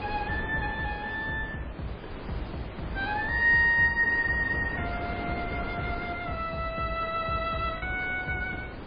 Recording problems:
codec artefacts; MP3, log-spectral distance 3 dB, nothing above 4 kHz
wind noise; below 890 Hz, SNR 11 dB
packet loss; 0.5% of the sound replaced, filled with the last packet

